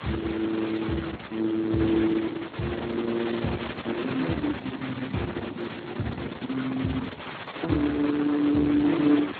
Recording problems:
lossy codec; Opus, then Speex, log-spectral distance 14 dB
hiss; SNR 10 dB

